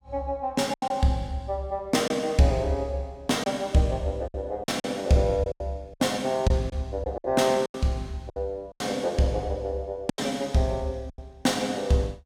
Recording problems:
packet loss; 8% of the sound replaced, filled with silence

